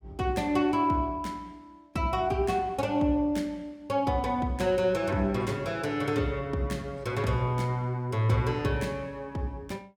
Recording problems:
none

